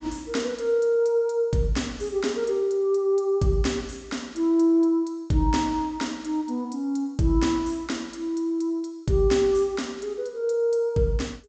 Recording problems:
low-pass filter; nothing above 8 kHz

